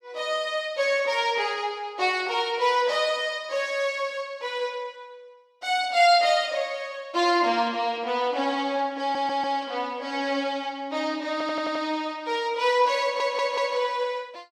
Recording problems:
audio stuttering; at 9 s, at 11 s and at 13 s

